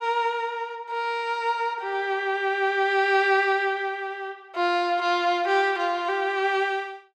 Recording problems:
none

